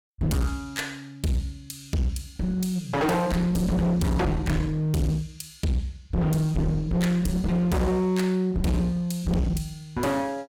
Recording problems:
distorted audio; hard clipping, uneven, signal-to-distortion ratio 5 dB

